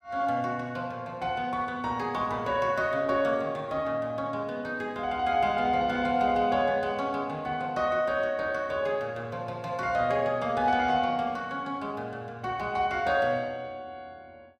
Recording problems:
none

